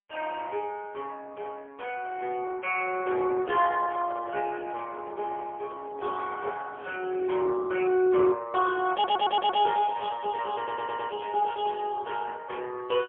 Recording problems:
phone line; 280 Hz to 3.3 kHz, AMR-NB, then MP3
handling noise; from 4 to 7.5 s; peak -13 dB vs average level
stutter; at 9 s and at 11 s

